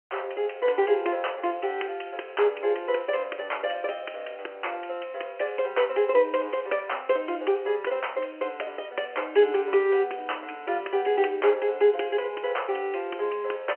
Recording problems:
telephone audio; 320 Hz to 3.1 kHz, G.711

